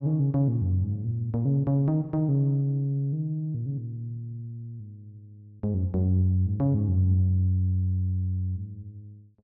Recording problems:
none

